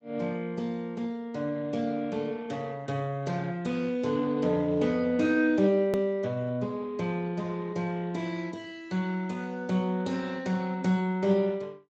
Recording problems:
codec artefacts; Speex, log-spectral distance 3 dB, nothing above 19.5 kHz
hard cut with a click; at 6 s

